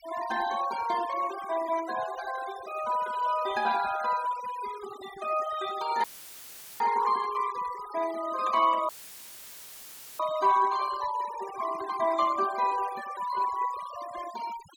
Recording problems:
noise reduction artefacts; signal-to-artefact ratio 15 dB
dropout; at 6 s for 1 s and at 9 s for 1.5 s; filled with static

